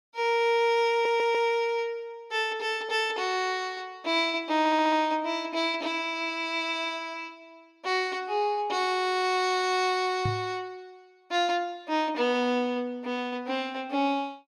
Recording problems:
stutter; at 1 s and at 4.5 s
knock on the microphone; at 10 s; peak 0 dB vs average level

